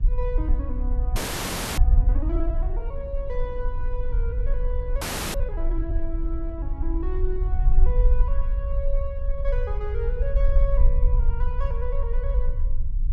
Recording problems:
rumble; below 48 Hz, strongest tone 20 Hz, SNR -9 dB
wind noise; below 290 Hz, SNR 16 dB
audio freezing; at 1 s for 0.5 s and at 5 s

